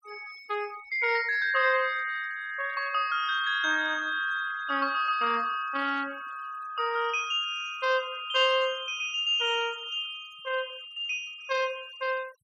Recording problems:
noise reduction artefacts; signal-to-artefact ratio 22 dB

